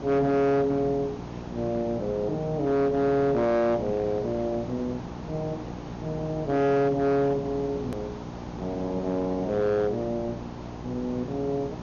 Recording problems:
low-pass filter; nothing above 6.9 kHz
distortion; hard clipping, signal-to-distortion ratio 11 dB
hum; 60 Hz, harmonics up to 1.4 kHz, SNR 14 dB
hiss; SNR 13 dB
click at an edit; at 8 s

